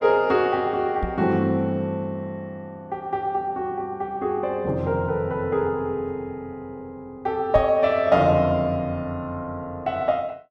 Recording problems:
microphone bump; at 1 s and at 7.5 s; peak -1 dB vs average level

